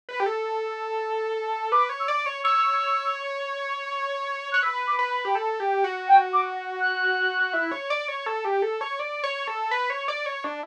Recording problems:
none

